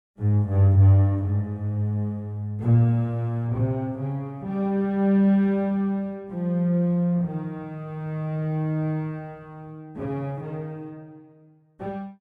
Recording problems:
none

